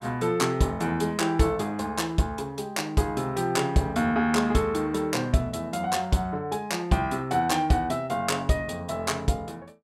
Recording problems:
none

